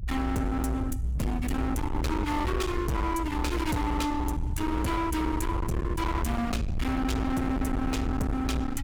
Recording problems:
distorted audio; hard clipping, signal-to-distortion ratio 6 dB
low-frequency rumble; below 250 Hz, SNR 2 dB

